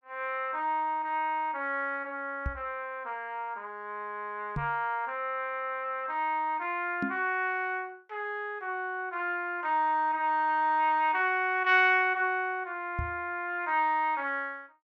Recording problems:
knock on the microphone; 4 times, first at 2.5 s; peak +1 dB vs average level

